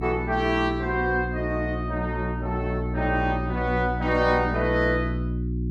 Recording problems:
mains hum; 60 Hz, harmonics up to 360 Hz, SNR 4 dB

